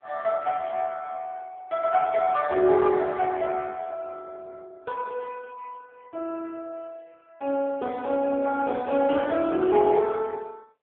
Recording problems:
telephone audio; 300 Hz to 3.4 kHz, AMR-NB

